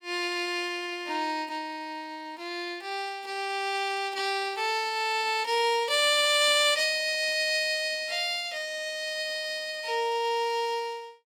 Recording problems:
none

